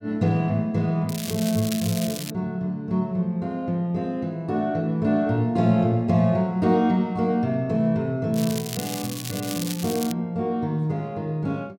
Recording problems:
crackling; from 1 to 2.5 s and from 8.5 to 10 s; loose cable, SNR 9 dB

